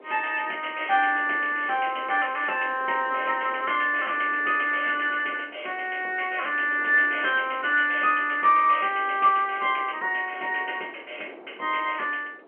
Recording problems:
telephone audio; 300 Hz to 3.1 kHz, G.711
wind noise; below 720 Hz, SNR 22 dB

